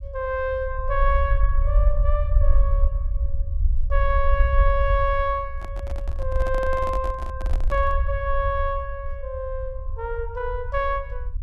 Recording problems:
rumble; below 60 Hz, SNR 0 dB
handling noise; from 5.5 to 8 s; peak -6 dB vs average level

